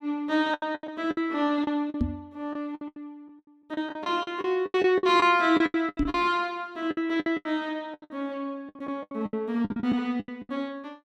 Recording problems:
packet loss; 18% of the sound replaced, filled with the last packet
knock on the microphone; at 2 s and at 6 s; peak +5 dB vs average level

